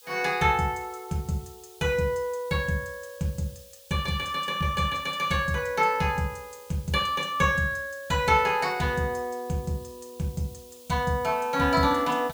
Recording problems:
background hiss; SNR 23 dB

